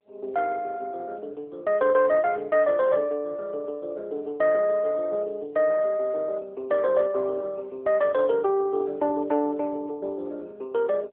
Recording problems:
telephone audio; 340 Hz to 3.9 kHz, AMR-NB

